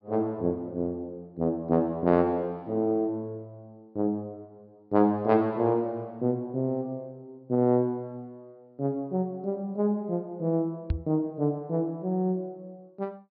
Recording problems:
low-pass filter; nothing above 5.5 kHz
knock on the microphone; at 11 s; peak +4 dB vs average level

